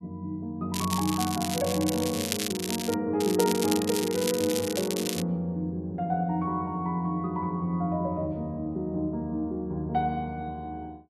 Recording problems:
crackle; from 0.5 to 3 s and from 3 to 5 s; loose cable, SNR 4 dB

